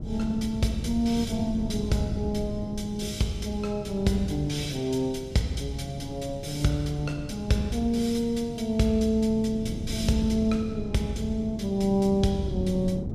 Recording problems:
wind noise; below 220 Hz, SNR 9 dB

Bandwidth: 14.5 kHz